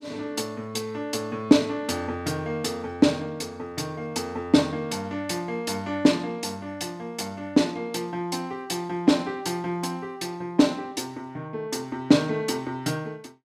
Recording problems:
none

